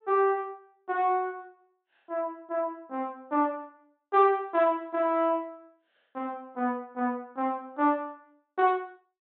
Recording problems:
treble cut off; nothing above 4 kHz

